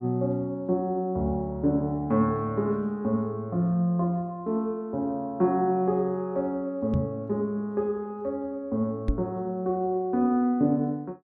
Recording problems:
knock on the microphone; at 7 s and at 9 s; peak +5 dB vs average level

